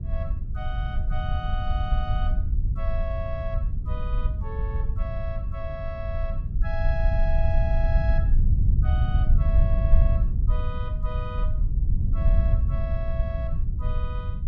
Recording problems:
rumble; below 76 Hz, SNR -11 dB

